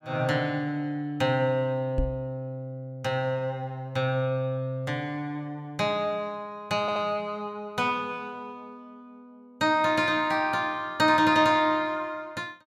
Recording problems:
microphone thump; at 2 s; peak +2 dB vs average level
audio stuttering; at 7 s

